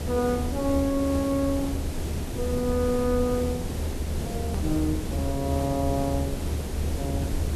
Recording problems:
hiss; SNR 6 dB
low-frequency rumble; below 78 Hz, strongest tone 76 Hz, SNR 5 dB
edit click; at 4.5 s

